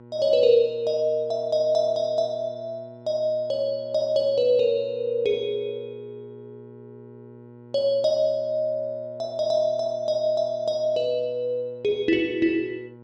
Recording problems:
hum; 60 Hz, harmonics up to 1.4 kHz, SNR 22 dB

